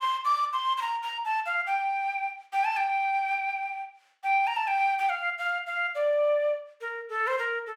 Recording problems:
none

